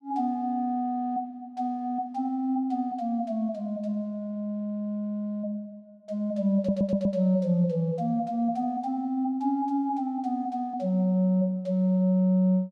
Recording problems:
stutter; at 6.5 s

